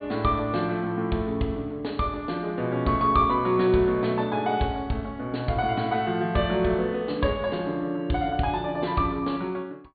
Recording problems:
treble missing; nothing above 4.5 kHz

